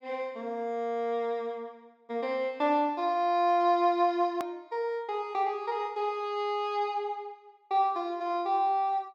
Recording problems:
hard cut with a click; at 4.5 s

